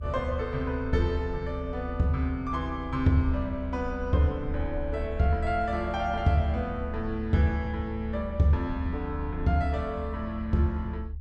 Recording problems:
rumble; below 74 Hz, strongest tone 72 Hz, SNR 9 dB

